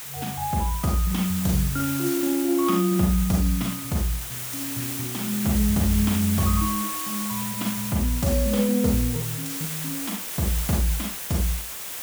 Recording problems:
hiss; slope 0 dB per octave, SNR 5 dB

